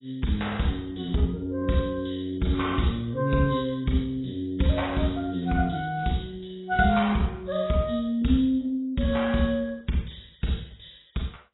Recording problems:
lossy compression; AAC, log-spectral distance 5 dB, nothing above 3.9 kHz

